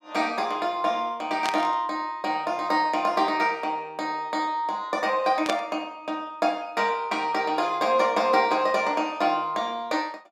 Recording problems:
static burst; at 1.5 s and at 5.5 s; peak -1 dB vs average level

